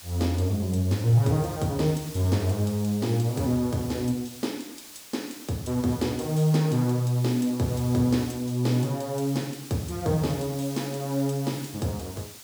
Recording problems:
background hiss; slope +1 dB per octave, SNR 16 dB

